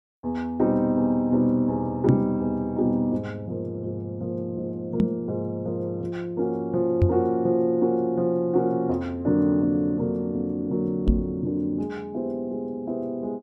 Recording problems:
microphone thump; 4 times, first at 2 s; peak +9 dB vs average level

